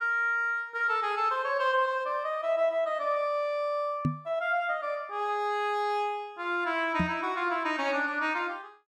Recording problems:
microphone thump; at 4 s and at 7 s; peak +4 dB vs average level

